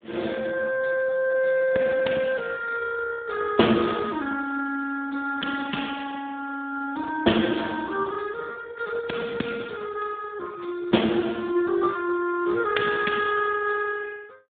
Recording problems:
phone line; 190 Hz to 3.5 kHz, Speex

